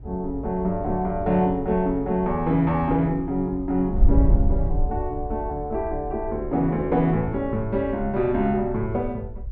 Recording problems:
wind noise; below 66 Hz, SNR 7 dB

